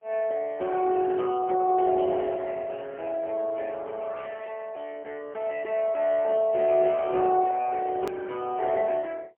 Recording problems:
phone line; 280 Hz to 3.1 kHz, AMR-NB, then MP3
hard cut with a click; at 8 s

